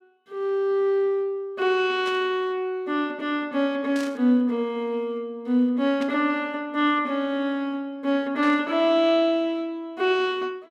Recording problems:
burst of static; 4 times, first at 2 s; peak -9 dB vs average level

